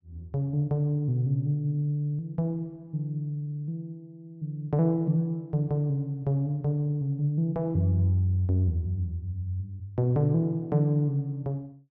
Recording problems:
none

